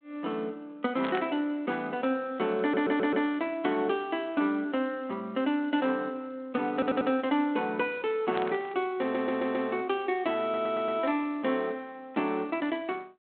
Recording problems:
telephone audio; 190 Hz to 3.5 kHz, G.726
burst of static; at 1 s and at 8.5 s; peak -4 dB vs average level
stutter; 4 times, first at 2.5 s

